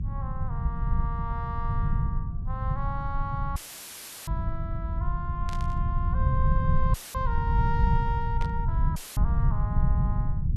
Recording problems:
mains hum; 60 Hz, harmonics up to 600 Hz, SNR 15 dB
rumble; below 120 Hz, SNR -7 dB
audio cutting out; at 3.5 s for 0.5 s, at 7 s and at 9 s; filled with static
burst of static; at 5.5 s and at 8.5 s; peak -3 dB vs average level

